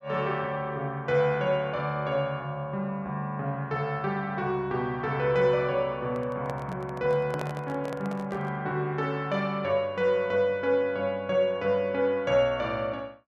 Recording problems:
microphone handling noise; from 6 to 8.5 s; peak -4 dB vs average level

